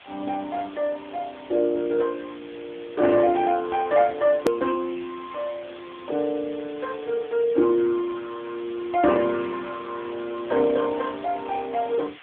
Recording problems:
phone line; 260 Hz to 3.2 kHz, AMR-NB
hiss; SNR 21 dB
edit click; at 4.5 s

